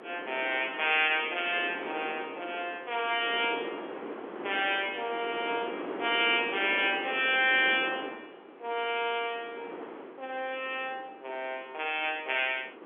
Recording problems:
telephone audio; 280 Hz to 3.5 kHz, G.711
wind on the microphone; below 940 Hz, SNR 12 dB

